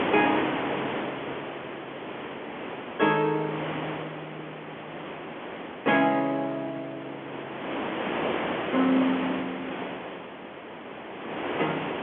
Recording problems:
phone line; 220 Hz to 3.6 kHz, G.711
wind on the microphone; below 1.8 kHz, SNR 6 dB

